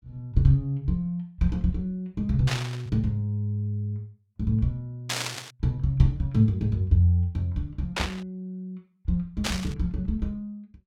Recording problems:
static burst; 4 times, first at 2.5 s; peak +3 dB vs average level

